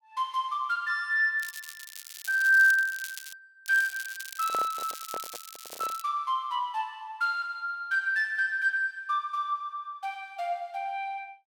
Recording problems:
crackle; from 1.5 to 3.5 s and from 3.5 to 6 s; loose cable, SNR 13 dB
handling noise; from 4.5 to 6 s; peak -6 dB vs average level

